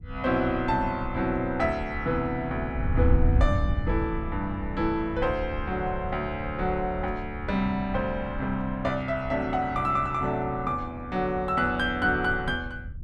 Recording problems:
wind on the microphone; below 94 Hz, SNR 6 dB

